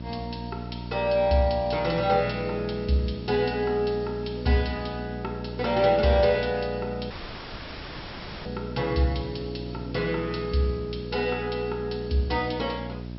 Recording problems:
low-pass filter; nothing above 5.5 kHz
electrical hum; 60 Hz, harmonics up to 960 Hz, SNR 10 dB
hiss; slope +1 dB per octave, SNR 27 dB
audio cutting out; at 7 s for 1.5 s

